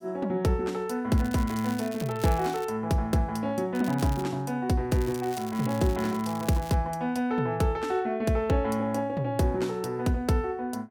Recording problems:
crackle; 4 times, first at 1 s; loose cable, SNR 17 dB

